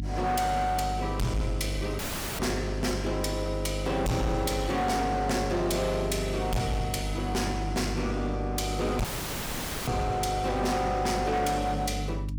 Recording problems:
distortion; hard clipping, signal-to-distortion ratio 7 dB
hum; 50 Hz, harmonics up to 300 Hz, SNR 6 dB
audio cutting out; at 2 s and at 9 s for 1 s

